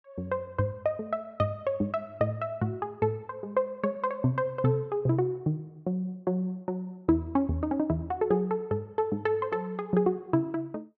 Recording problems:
none

